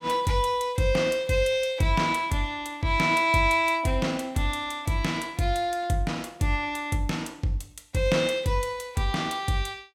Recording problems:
none

